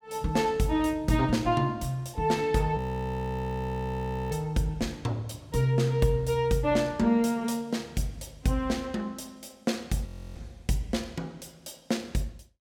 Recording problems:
audio freezing; at 3 s for 1.5 s and at 10 s

